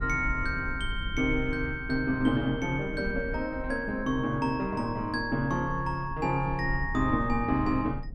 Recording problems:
low-frequency rumble; below 74 Hz, SNR 11 dB

